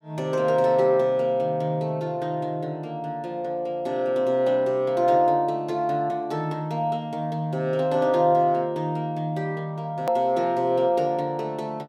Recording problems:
edit click; at 10 s

